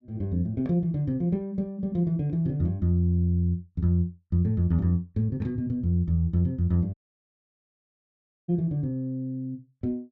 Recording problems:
audio cutting out; at 7 s for 1.5 s

